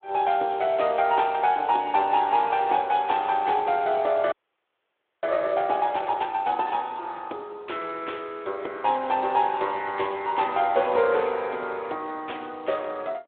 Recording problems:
phone line; 320 Hz to 3.8 kHz, Speex
audio freezing; at 4.5 s for 1 s

